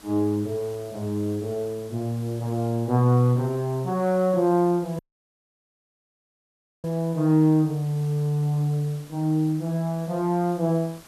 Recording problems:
background hiss; slope -2 dB per octave, SNR 24 dB
dropout; at 5 s for 2 s

